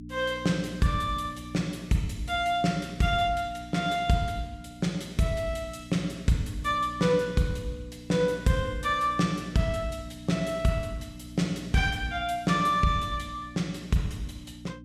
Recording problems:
hum; 60 Hz, harmonics up to 300 Hz, SNR 16 dB

